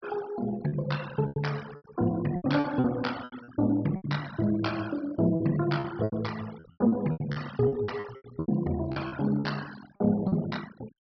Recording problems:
treble missing; nothing above 5.5 kHz
noise reduction artefacts; signal-to-artefact ratio 16 dB
lost packets; 14% of the sound replaced, filled with repeated pitch periods

